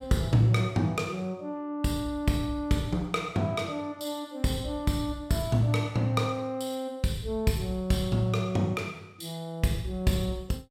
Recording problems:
none

